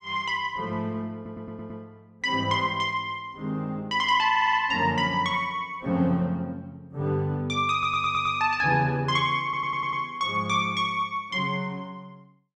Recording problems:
stutter; 4 times, first at 1 s

